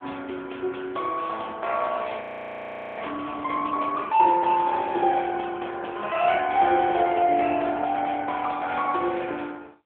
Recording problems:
phone line; 260 Hz to 3.5 kHz, AMR-NB
frozen audio; at 2 s for 1 s

